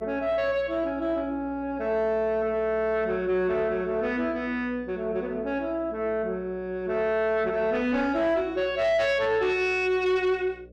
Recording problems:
distortion; soft clipping, signal-to-distortion ratio 11 dB
electrical hum; 60 Hz, harmonics up to 600 Hz, SNR 23 dB

